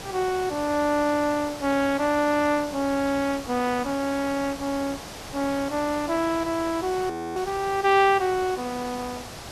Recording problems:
background hiss; slope -3 dB per octave, SNR 13 dB
audio freezing; at 7 s

